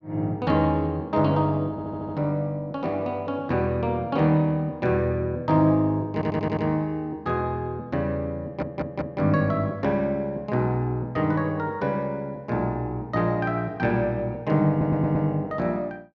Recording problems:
stutter; 4 times, first at 1.5 s

